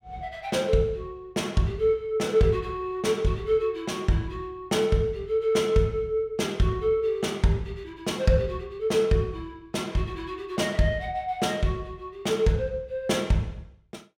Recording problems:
none

